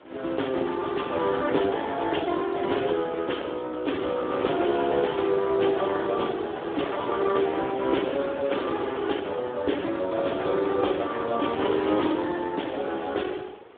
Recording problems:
telephone audio; 280 Hz to 3.7 kHz, Speex
wind on the microphone; below 980 Hz, SNR 15 dB

